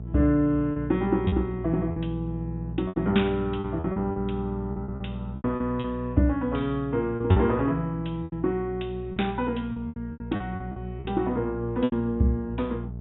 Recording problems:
treble cut off; nothing above 3.7 kHz
mains hum; 60 Hz, harmonics up to 480 Hz, SNR 9 dB
lost packets; 10% of the sound replaced, filled with repeated pitch periods

